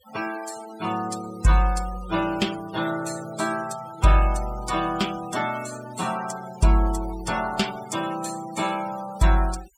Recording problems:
denoising artefacts; signal-to-artefact ratio 15 dB

